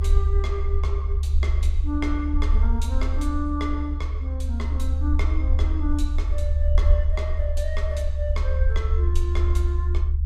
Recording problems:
low-frequency rumble; below 72 Hz, SNR -8 dB

